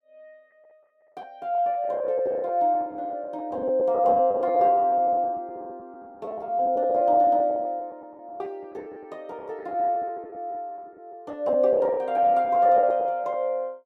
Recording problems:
lost packets; 15% of the sound replaced, filled with the last packet

